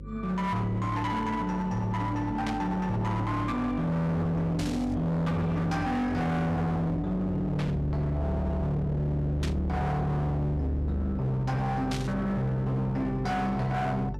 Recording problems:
distorted audio; hard clipping, signal-to-distortion ratio 7 dB
hum; 50 Hz, harmonics up to 550 Hz, SNR 10 dB
burst of static; 5 times, first at 2.5 s; peak -4 dB vs average level

